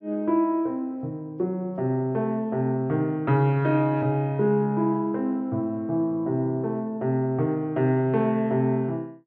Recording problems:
low-pass filter; nothing above 8 kHz

